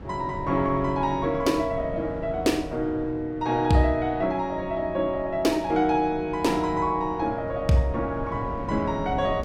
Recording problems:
wind noise; below 310 Hz, SNR 13 dB

